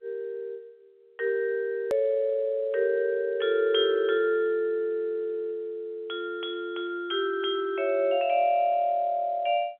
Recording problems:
phone line; 370 Hz to 3.3 kHz, G.711
edit click; at 2 s

